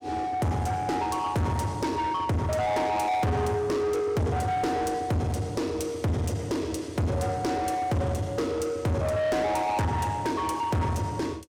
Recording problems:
distorted audio; soft clipping, signal-to-distortion ratio 7 dB

